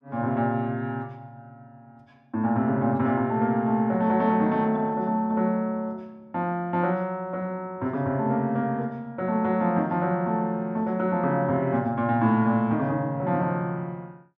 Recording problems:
none

